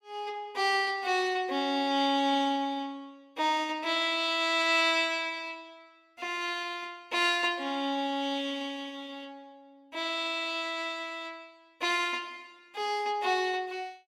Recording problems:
none

